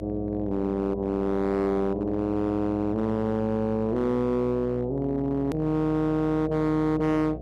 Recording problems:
distortion; hard clipping, signal-to-distortion ratio 11 dB
mains hum; 60 Hz, harmonics up to 720 Hz, SNR 14 dB
hard cut with a click; at 5.5 s

